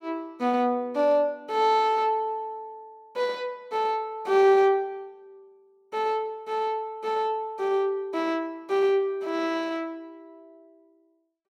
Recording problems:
none

